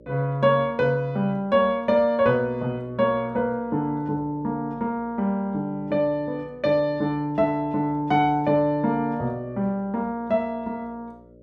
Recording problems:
electrical hum; 60 Hz, harmonics up to 600 Hz, SNR 25 dB

